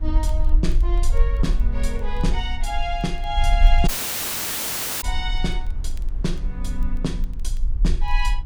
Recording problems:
low-frequency rumble; below 44 Hz, SNR -4 dB
wind on the microphone; below 300 Hz, SNR 19 dB
crackling; vinyl, SNR 29 dB
dropout; at 4 s for 1 s

